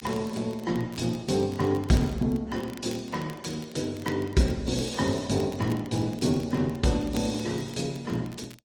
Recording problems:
codec artefacts; AAC, then Opus, log-spectral distance 4 dB, nothing above 17.7 kHz
crackle; vinyl, SNR 22 dB

